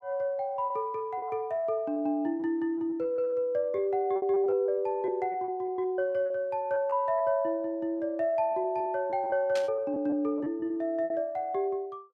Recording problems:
packet loss; 11% of the sound replaced, filled with repeated pitch periods
static burst; at 9.5 s; peak -5 dB vs average level

